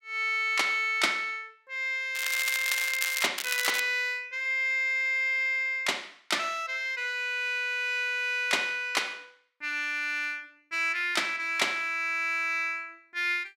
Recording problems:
crackling; from 2 to 3.5 s and at 3.5 s; loose cable, SNR 4 dB

